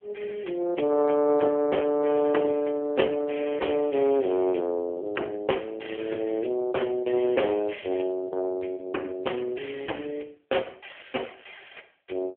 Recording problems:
phone line; 260 Hz to 3.3 kHz, AMR-NB

